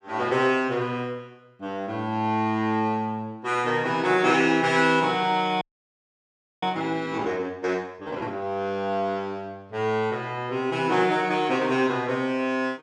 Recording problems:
audio freezing; at 5.5 s for 1 s

